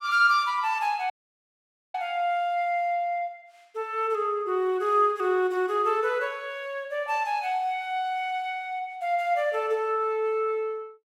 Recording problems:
dropout; at 1 s for 1 s

